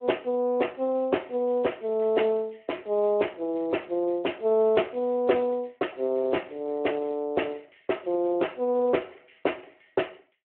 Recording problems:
telephone audio; 300 Hz to 3.1 kHz, Speex

